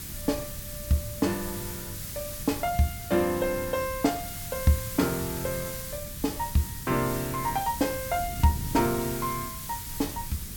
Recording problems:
hiss; slope +1 dB per octave, SNR 8 dB
wind on the microphone; below 150 Hz, SNR 13 dB

